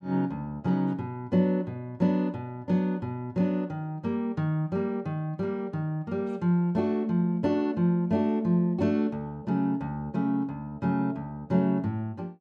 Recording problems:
none

